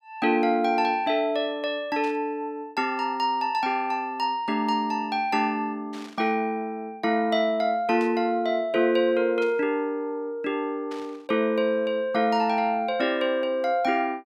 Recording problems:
burst of static; 5 times, first at 2 s; peak -14 dB vs average level

